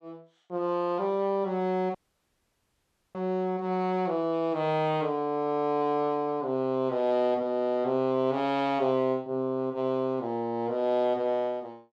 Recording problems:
dropout; at 2 s for 1 s

